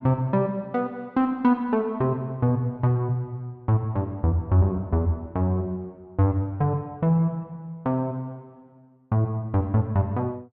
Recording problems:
none

